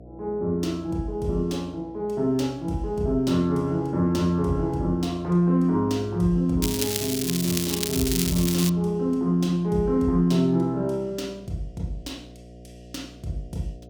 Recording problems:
electrical hum; 60 Hz, harmonics up to 720 Hz, SNR 21 dB
crackle; from 6.5 to 8.5 s; loose cable, SNR 3 dB

